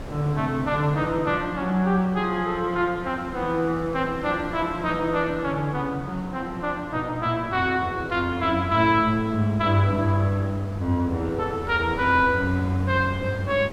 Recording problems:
wind on the microphone; below 660 Hz, SNR 15 dB

